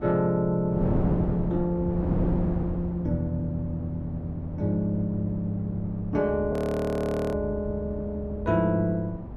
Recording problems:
hum; 50 Hz, harmonics up to 600 Hz, SNR 21 dB
wind noise; below 290 Hz, SNR 7 dB
frozen audio; at 6.5 s for 1 s

